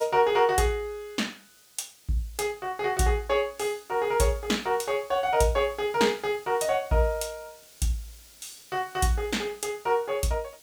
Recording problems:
background hiss; SNR 24 dB

